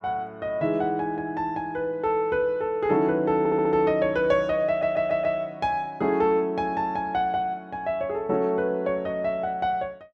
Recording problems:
audio stuttering; at 3.5 s and at 4.5 s

